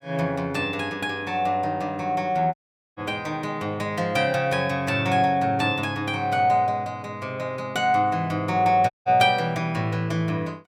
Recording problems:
audio cutting out; at 2.5 s and at 9 s

